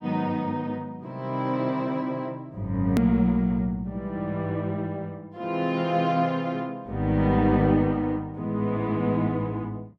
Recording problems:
hard cut with a click; at 3 s

